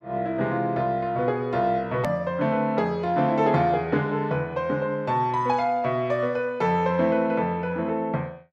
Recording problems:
hard cut with a click; at 2 s

